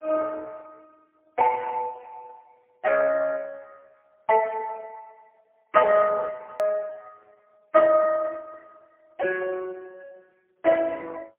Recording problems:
phone line; 370 Hz to 2.6 kHz, AMR-NB, then MP3
edit click; at 6.5 s

